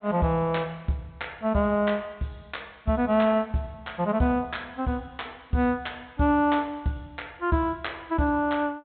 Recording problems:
low-pass filter; nothing above 4 kHz

